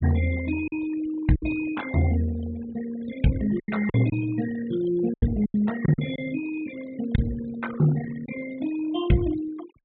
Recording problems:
treble cut off; nothing above 4 kHz
denoising artefacts; signal-to-artefact ratio 13 dB
lost packets; 5% of the sound replaced, filled with silence

